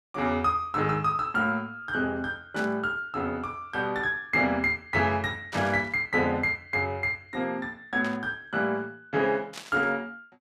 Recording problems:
static burst; 4 times, first at 2.5 s; peak -7 dB vs average level

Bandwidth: 14 kHz